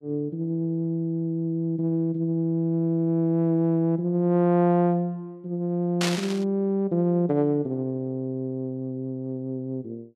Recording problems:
static burst; at 6 s; peak +2 dB vs average level

